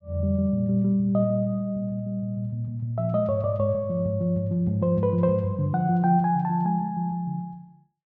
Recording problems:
none

